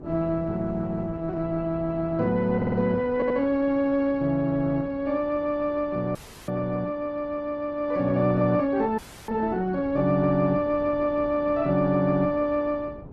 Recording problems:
lossy codec; Opus, log-spectral distance 2 dB
wind noise; below 360 Hz, SNR 19 dB
audio stuttering; at 2.5 s and at 3 s
dropout; at 6 s and at 9 s

